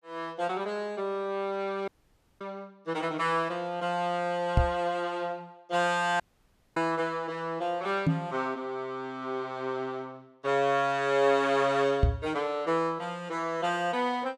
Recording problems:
dropout; at 2 s for 0.5 s and at 6 s for 0.5 s
microphone bump; at 4.5 s, at 8 s and at 12 s; peak +9 dB vs average level

